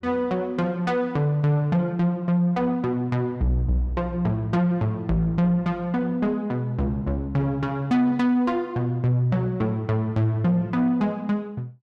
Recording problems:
distortion; soft clipping, signal-to-distortion ratio 11 dB

